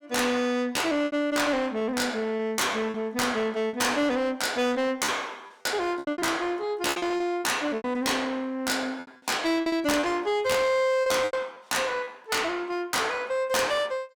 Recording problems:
distortion; soft clipping, signal-to-distortion ratio 7 dB
lost packets; 9% of the sound replaced, filled with repeated pitch periods

